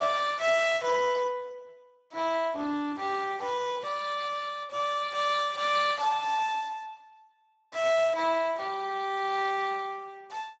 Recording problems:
lossy compression; Speex, log-spectral distance 4 dB, nothing above 7.6 kHz

